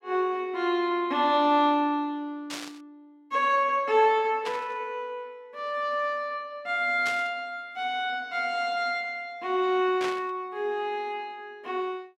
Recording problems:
static burst; 4 times, first at 2.5 s; peak -4 dB vs average level

